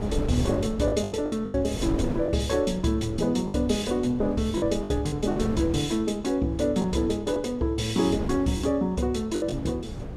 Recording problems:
wind on the microphone; below 290 Hz, SNR 10 dB
lost packets; 7% of the sound replaced, filled with the last packet

